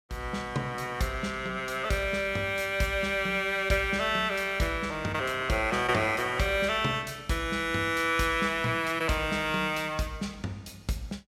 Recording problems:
none

